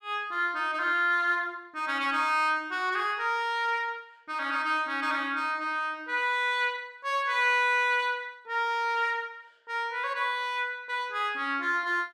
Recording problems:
none

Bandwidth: 14 kHz